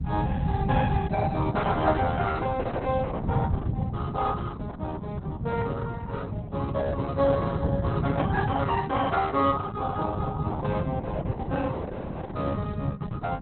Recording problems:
lossy compression; Opus, log-spectral distance 4 dB, nothing above 4 kHz
rumble; below 170 Hz, SNR 0 dB

